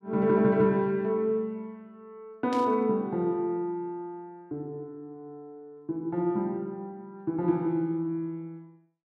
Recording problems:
static burst; at 2.5 s; peak -8 dB vs average level

